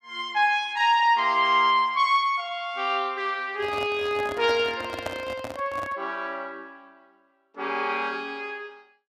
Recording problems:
handling noise; from 3.5 to 6 s; peak -3 dB vs average level

